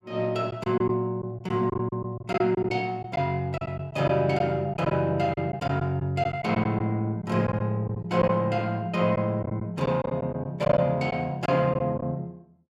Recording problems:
lost packets; 7% of the sound replaced, filled with silence

